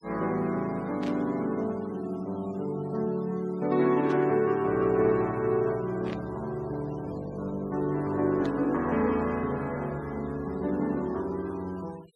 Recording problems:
denoising artefacts; signal-to-artefact ratio 23 dB
burst of static; 4 times, first at 1 s; peak -11 dB vs average level

